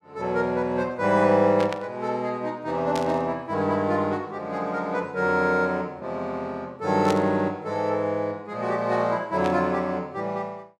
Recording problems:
static burst; 4 times, first at 1.5 s; peak -5 dB vs average level

